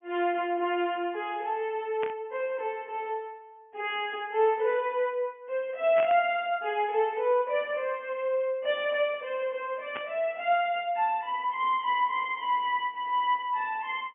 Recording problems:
treble missing; nothing above 3.1 kHz
burst of static; at 2 s, at 6 s and at 10 s; peak -5 dB vs average level

